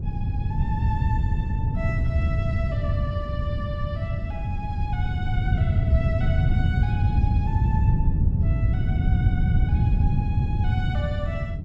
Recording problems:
wind noise; below 130 Hz, SNR -12 dB

